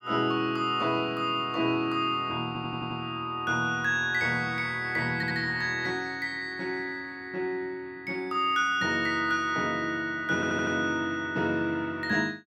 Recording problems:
stutter; at 2.5 s, at 5 s and at 10 s

